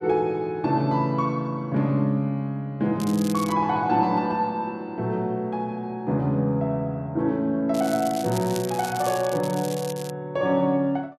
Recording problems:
crackling; at 3 s and from 7.5 to 10 s; loose cable, SNR 14 dB

